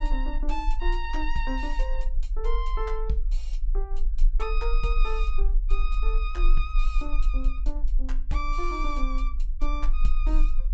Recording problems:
treble cut off; nothing above 8 kHz
low-frequency rumble; below 36 Hz, strongest tone 22 Hz, SNR -5 dB

